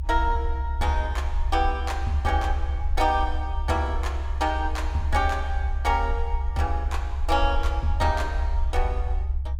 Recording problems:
low-frequency rumble; below 68 Hz, SNR 1 dB

